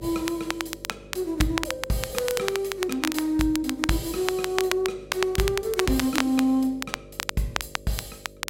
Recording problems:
hum; 50 Hz, harmonics up to 600 Hz, SNR 20 dB
crackling; vinyl, SNR 5 dB

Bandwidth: 16 kHz